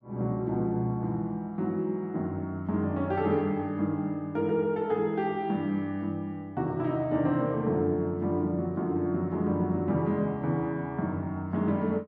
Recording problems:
none

